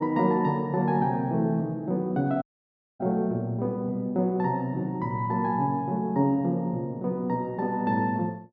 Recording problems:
dropout; at 2.5 s for 0.5 s

